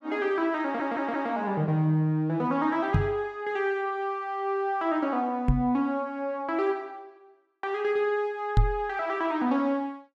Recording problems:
stutter; at 0.5 s
microphone thump; at 3 s, at 5.5 s and at 8.5 s; peak +8 dB vs average level

